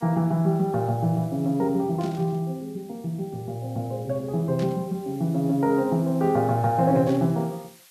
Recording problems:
background hiss; SNR 27 dB
static burst; at 2 s, at 4.5 s and at 7 s; peak -13 dB vs average level

